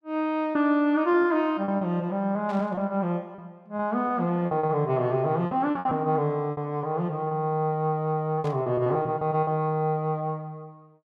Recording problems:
lost packets; 9% of the sound replaced, filled with repeated pitch periods
burst of static; at 2.5 s and at 8.5 s; peak -15 dB vs average level

